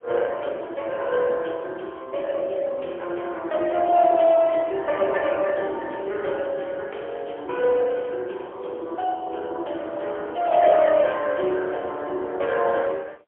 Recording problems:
phone line; 300 Hz to 3.6 kHz, AMR-NB, then MP3

